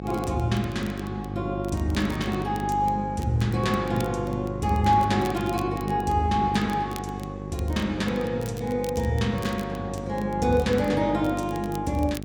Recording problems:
hum; 50 Hz, harmonics up to 850 Hz, SNR 8 dB
crackling; vinyl, SNR 22 dB

